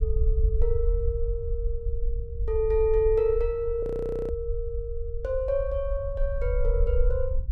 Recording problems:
low-frequency rumble; below 58 Hz, SNR 2 dB
audio freezing; at 4 s

